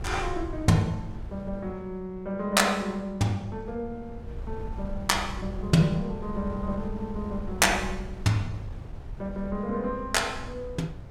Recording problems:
wind on the microphone; below 100 Hz, SNR 12 dB

